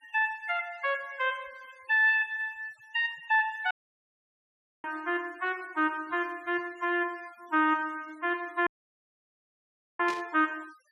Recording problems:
noise reduction artefacts; signal-to-artefact ratio 28 dB
audio cutting out; at 3.5 s for 1 s and at 8.5 s for 1.5 s
static burst; at 10 s; peak -7 dB vs average level

